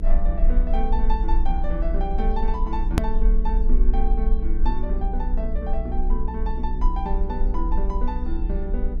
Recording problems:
electrical hum; 60 Hz, harmonics up to 480 Hz, SNR 1 dB
low-frequency rumble; below 38 Hz, strongest tone 22 Hz, SNR -5 dB
hard cut with a click; at 3 s

